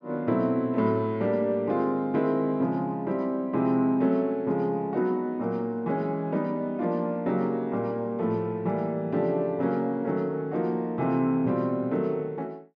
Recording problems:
none

